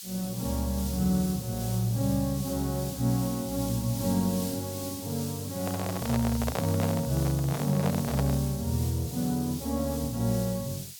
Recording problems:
hiss; slope +6 dB per octave, SNR 10 dB
handling noise; from 5.5 to 8.5 s; peak 0 dB vs average level

